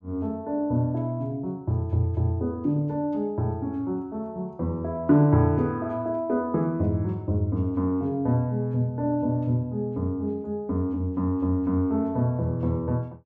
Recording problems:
none

